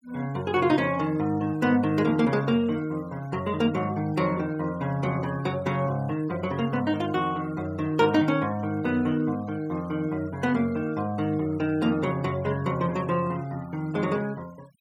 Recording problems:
noise reduction artefacts; signal-to-artefact ratio 23 dB

